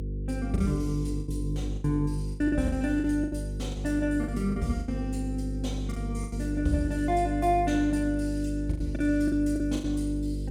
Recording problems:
electrical hum; 50 Hz, harmonics up to 500 Hz, SNR 5 dB
lost packets; 11% of the sound replaced, filled with the last packet

